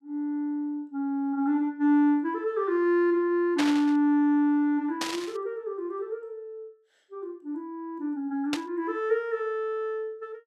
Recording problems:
burst of static; at 3.5 s, at 5 s and at 8.5 s; peak +1 dB vs average level

